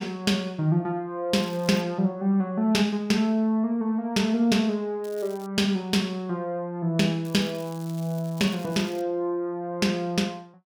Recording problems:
crackle; at 1.5 s, at 5 s and from 7 to 9 s; loose cable, SNR 23 dB

